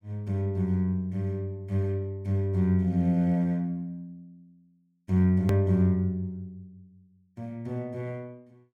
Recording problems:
click at an edit; at 5.5 s

